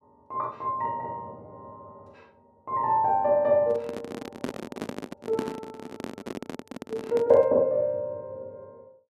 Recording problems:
handling noise; from 3.5 to 7.5 s; peak 0 dB vs average level

